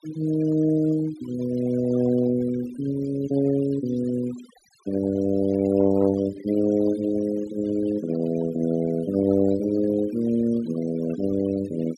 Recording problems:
noise reduction artefacts; signal-to-artefact ratio 18 dB

